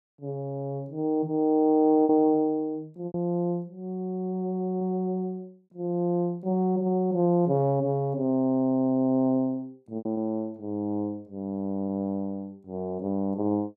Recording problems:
lost packets; 2% of the sound replaced, filled with repeated pitch periods

